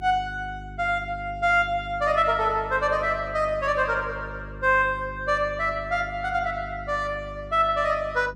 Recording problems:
mains hum; 50 Hz, harmonics up to 400 Hz, SNR 16 dB

